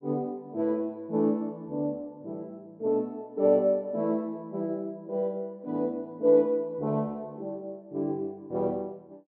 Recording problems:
none

